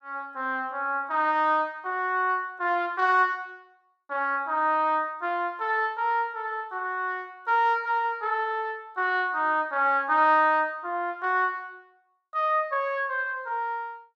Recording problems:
none

